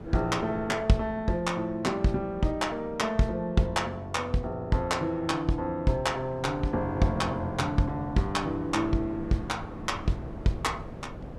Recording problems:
wind on the microphone; below 410 Hz, SNR 15 dB

